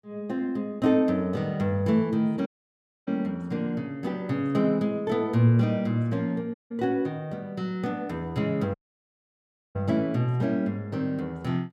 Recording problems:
dropout; at 2.5 s for 0.5 s, at 6.5 s and at 8.5 s for 1 s

